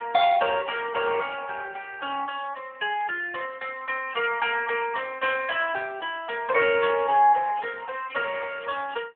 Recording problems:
telephone audio; 300 Hz to 3.6 kHz, AMR-NB

